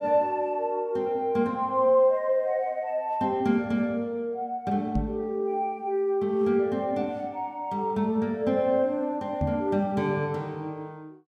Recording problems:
microphone bump; at 5 s and at 9.5 s; peak +1 dB vs average level

